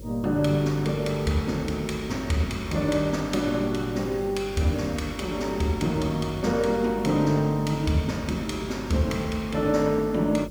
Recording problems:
hum; 50 Hz, harmonics up to 550 Hz, SNR 15 dB
hiss; slope +5 dB per octave, SNR 27 dB

